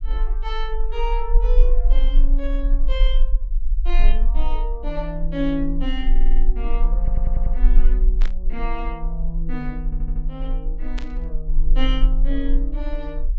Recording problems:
treble cut off; nothing above 8 kHz
low-frequency rumble; below 36 Hz, strongest tone 20 Hz, SNR -7 dB
audio stuttering; at 6 s, at 7 s and at 10 s
burst of static; at 8 s and at 11 s; peak -1 dB vs average level

